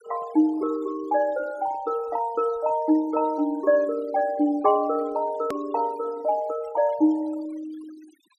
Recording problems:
denoising artefacts; signal-to-artefact ratio 22 dB
hard cut with a click; at 5.5 s

